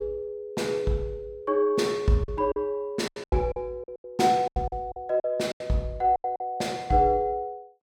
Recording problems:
lost packets; 10% of the sound replaced, filled with silence

